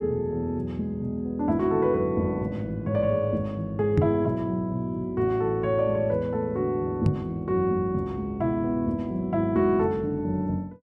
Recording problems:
microphone thump; at 4 s and at 7 s; peak +7 dB vs average level

